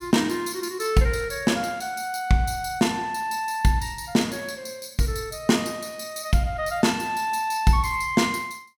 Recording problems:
none

